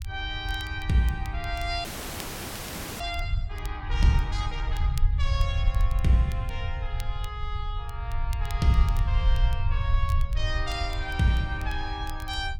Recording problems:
rumble; below 74 Hz, SNR -1 dB
crackle; vinyl, SNR 20 dB
audio freezing; at 2 s for 1 s

